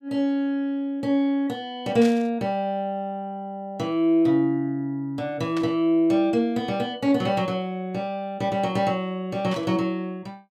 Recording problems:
static burst; at 2 s, at 5.5 s and at 9.5 s; peak -7 dB vs average level

